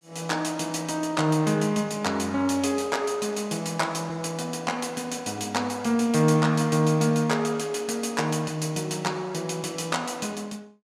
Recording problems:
none

